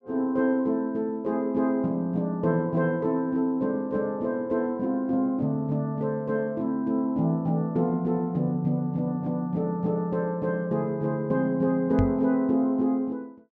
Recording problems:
microphone thump; at 12 s; peak +3 dB vs average level

